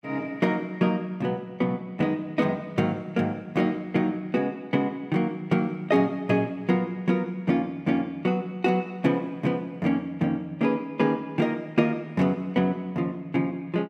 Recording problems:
none

